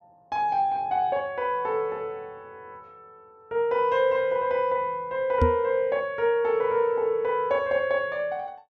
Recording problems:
microphone bump; at 5.5 s; peak +5 dB vs average level

